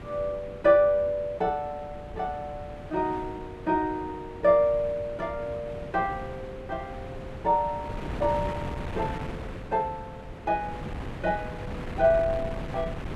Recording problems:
wind noise; below 510 Hz, SNR 11 dB

